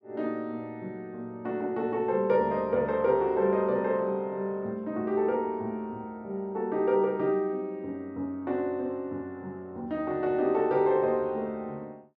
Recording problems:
none

